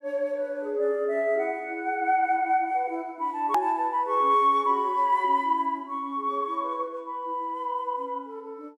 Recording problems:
edit click; at 3.5 s

